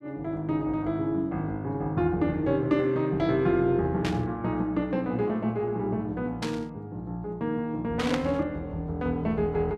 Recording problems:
burst of static; at 4 s, at 6.5 s and at 8 s; peak 0 dB vs average level

